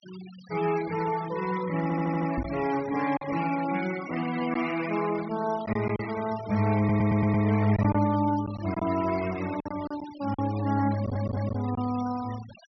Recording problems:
low-pass filter; nothing above 5.7 kHz
noise reduction artefacts; signal-to-artefact ratio 15 dB
lost packets; 4% of the sound replaced, filled with silence
audio stuttering; at 2 s, at 7 s and at 11 s
microphone thump; at 2.5 s; peak +1 dB vs average level

